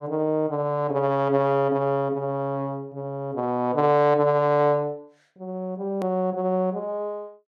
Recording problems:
edit click; at 6 s

